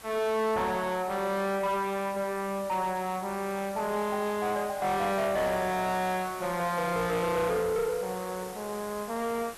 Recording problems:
distorted audio; soft clipping, signal-to-distortion ratio 6 dB
background hiss; slope -2 dB per octave, SNR 15 dB

